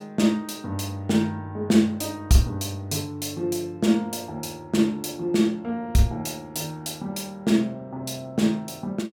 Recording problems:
none

